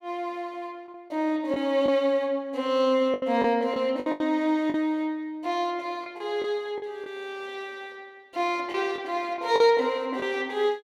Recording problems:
lost packets; 6% of the sound replaced, filled with the last packet

